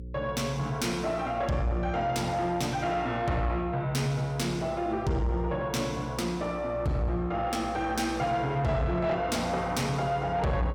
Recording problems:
distorted audio; soft clipping, signal-to-distortion ratio 12 dB
hum; 60 Hz, harmonics up to 540 Hz, SNR 15 dB

